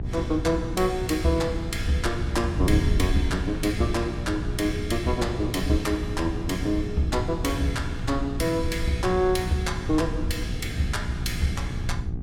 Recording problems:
hum; 60 Hz, harmonics up to 1.1 kHz, SNR 12 dB
wind noise; below 110 Hz, SNR 4 dB

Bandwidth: 17.5 kHz